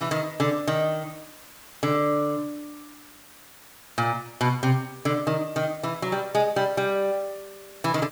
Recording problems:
background hiss; slope -1 dB per octave, SNR 20 dB

